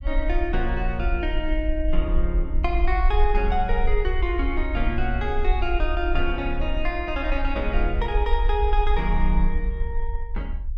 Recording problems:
rumble; below 50 Hz, strongest tone 20 Hz, SNR 0 dB

